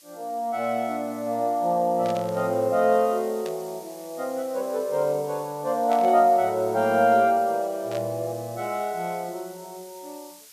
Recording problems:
hiss; slope +4 dB per octave, SNR 22 dB
static burst; 4 times, first at 2 s; peak -11 dB vs average level

